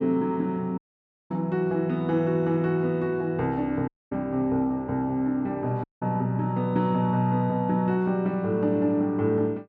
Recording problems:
dropout; at 1 s for 0.5 s, at 4 s and at 6 s

